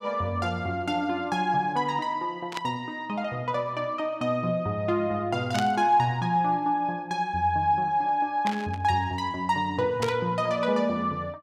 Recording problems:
static burst; 4 times, first at 2.5 s; peak -1 dB vs average level

